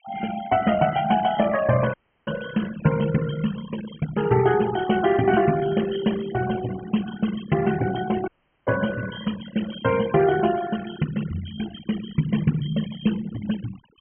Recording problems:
treble cut off; nothing above 3.2 kHz
denoising artefacts; signal-to-artefact ratio 14 dB
dropout; at 2 s and at 8.5 s

